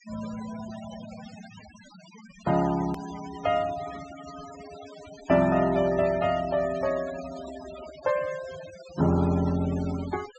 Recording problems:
treble missing; nothing above 8 kHz
denoising artefacts; signal-to-artefact ratio 16 dB
hard cut with a click; at 3 s

